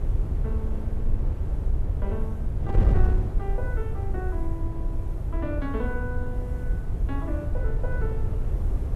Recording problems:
background hiss; SNR 27 dB
wind on the microphone; below 84 Hz, SNR -9 dB

